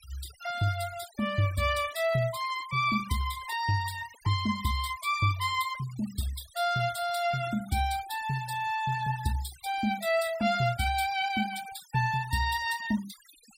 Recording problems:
noise reduction artefacts; signal-to-artefact ratio 16 dB

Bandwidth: 16 kHz